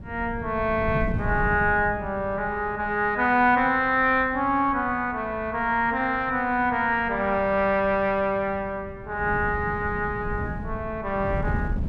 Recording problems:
wind noise; below 180 Hz, SNR 12 dB

